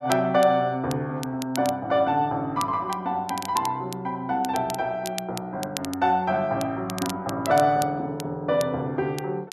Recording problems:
crackling; vinyl, SNR 14 dB

